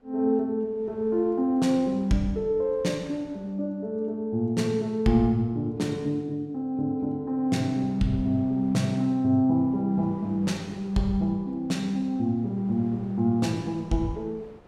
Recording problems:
wind noise; below 750 Hz, SNR 26 dB

